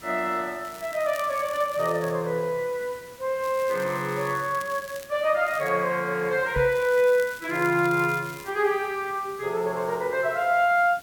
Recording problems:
hiss; slope -2 dB per octave, SNR 22 dB
crackle; 4 times, first at 0.5 s; loose cable, SNR 20 dB
microphone thump; at 6.5 s; peak -1 dB vs average level

